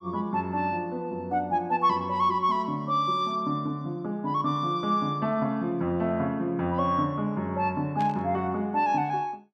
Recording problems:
burst of static; at 8 s; peak -11 dB vs average level

